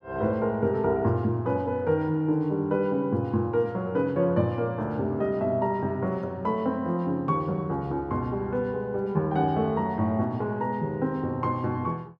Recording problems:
none

